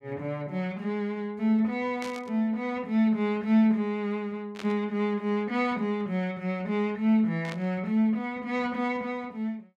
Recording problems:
burst of static; at 2 s, at 4.5 s and at 7.5 s; peak -8 dB vs average level

